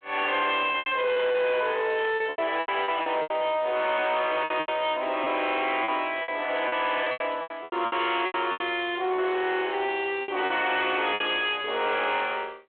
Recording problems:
telephone audio; 220 Hz to 3.4 kHz, G.726
distortion; soft clipping, signal-to-distortion ratio 10 dB
packet loss; 12% of the sound replaced, filled with repeated pitch periods
static burst; at 2 s; peak -11 dB vs average level

